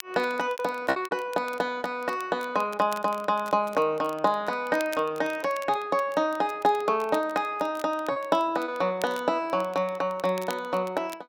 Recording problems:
crackle; vinyl, SNR 21 dB
lost packets; 3% of the sound replaced, filled with repeated pitch periods

